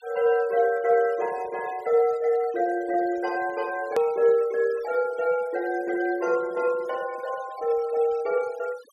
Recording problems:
noise reduction artefacts; signal-to-artefact ratio 23 dB
hard cut with a click; at 4 s

